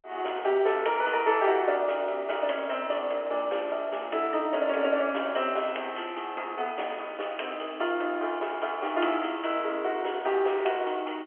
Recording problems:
phone line; 320 Hz to 3.3 kHz, G.711

